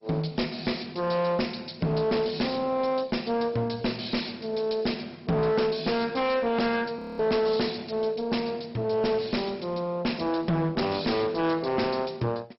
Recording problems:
codec artefacts; MP2, log-spectral distance 7 dB, nothing above 5.5 kHz
distorted audio; hard clipping, uneven, signal-to-distortion ratio 7 dB
frozen audio; at 7 s

